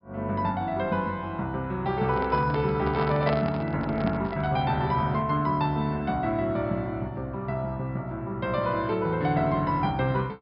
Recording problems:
low-pass filter; nothing above 5.5 kHz
handling noise; from 2 to 4.5 s; peak +1 dB vs average level

